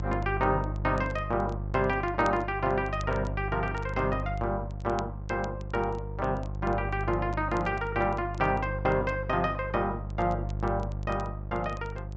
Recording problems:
low-pass filter; nothing above 8 kHz
electrical hum; 50 Hz, harmonics up to 700 Hz, SNR 6 dB
crackling; vinyl, SNR 27 dB

